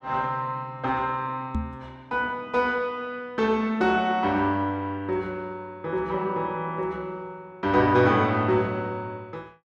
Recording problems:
microphone thump; at 1.5 s; peak +1 dB vs average level

